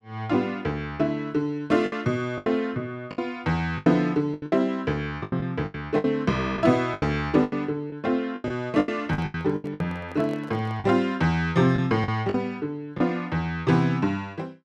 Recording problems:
packet loss; 10% of the sound replaced, filled with the last packet
microphone handling noise; from 9 to 11 s; peak -11 dB vs average level

